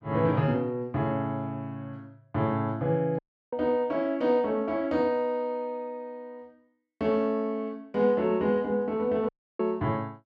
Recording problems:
audio cutting out; at 3 s and at 9.5 s

